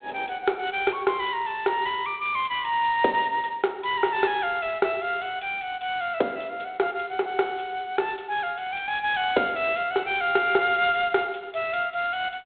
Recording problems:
phone line; 260 Hz to 3.7 kHz, G.726

